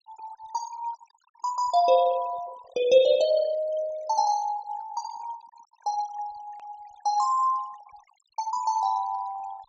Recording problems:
treble missing; nothing above 8 kHz
denoising artefacts; signal-to-artefact ratio 20 dB
edit click; at 6.5 s

